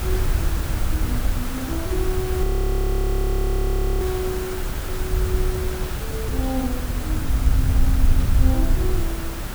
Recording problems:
background hiss; slope -4 dB per octave, SNR 2 dB
wind on the microphone; below 72 Hz, SNR -4 dB
audio freezing; at 2.5 s for 1.5 s

